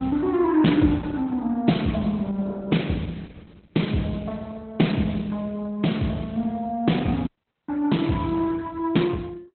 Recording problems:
lossy codec; Opus, log-spectral distance 4 dB, nothing above 4 kHz
dropout; at 7.5 s

